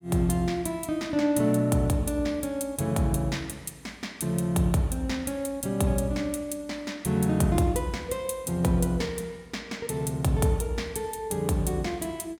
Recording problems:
none

